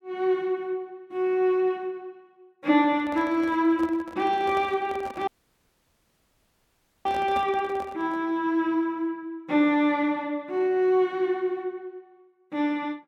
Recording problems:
handling noise; from 3 to 8 s; peak -8 dB vs average level
audio cutting out; at 5.5 s for 2 s

